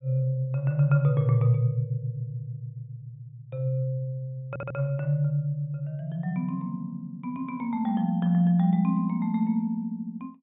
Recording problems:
treble missing; nothing above 4 kHz
stutter; at 4.5 s

